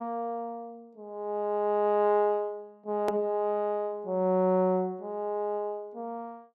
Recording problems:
hard cut with a click; at 3 s

